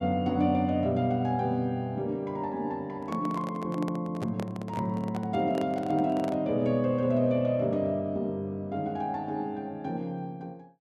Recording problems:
handling noise; from 3 to 6.5 s; peak -3 dB vs average level

